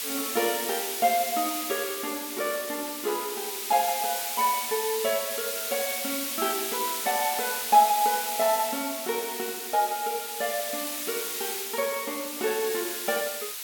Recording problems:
hiss; slope +3 dB per octave, SNR 2 dB

